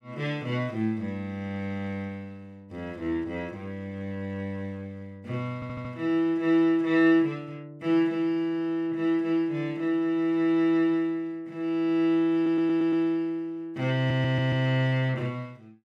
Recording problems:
audio stuttering; at 5.5 s, at 12 s and at 14 s

